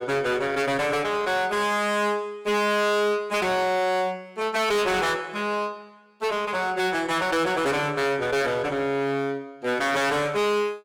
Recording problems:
distortion; hard clipping, uneven, signal-to-distortion ratio 7 dB

